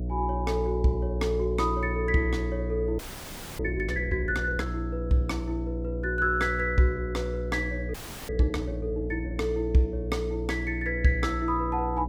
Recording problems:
hum; 60 Hz, harmonics up to 660 Hz, SNR 5 dB
frozen audio; at 3 s for 0.5 s and at 8 s

